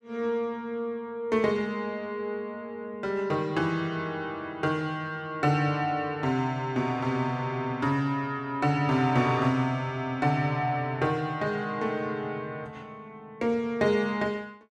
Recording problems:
none

